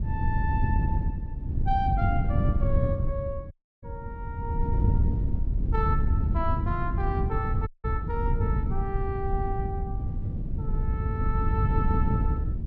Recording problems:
wind noise; below 110 Hz, SNR -5 dB
dropout; at 3.5 s and at 7.5 s

